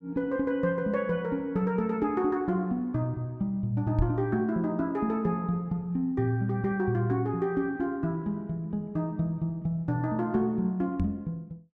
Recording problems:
microphone bump; at 4 s and at 11 s; peak +4 dB vs average level

